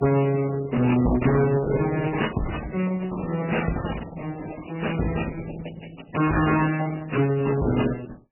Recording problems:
lossy compression; Opus, then MP3, log-spectral distance 7 dB, nothing above 2.9 kHz
distortion; hard clipping, uneven, signal-to-distortion ratio 7 dB

